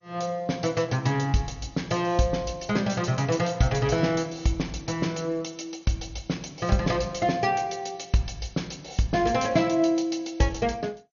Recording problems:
lossy codec; MP2, log-spectral distance 5 dB, nothing above 6.7 kHz

